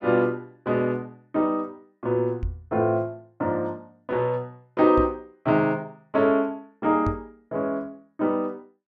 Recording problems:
microphone bump; at 2.5 s, at 5 s and at 7 s; peak 0 dB vs average level

